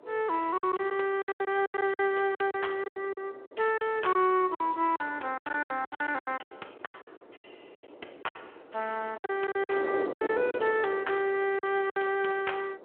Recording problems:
phone line; 320 Hz to 3.3 kHz, Speex
wind noise; below 600 Hz, SNR 14 dB
packet loss; 17% of the sound replaced, filled with silence

